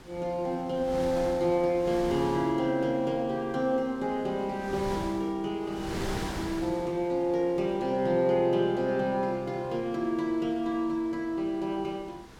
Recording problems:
wind noise; below 1.6 kHz, SNR 14 dB

